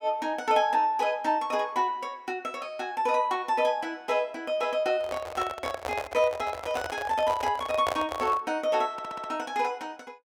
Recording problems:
microphone handling noise; from 5 to 8.5 s; peak +3 dB vs average level
audio stuttering; at 9 s

